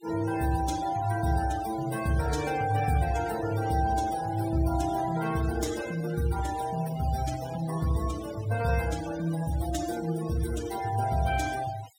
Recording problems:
noise reduction artefacts; signal-to-artefact ratio 13 dB

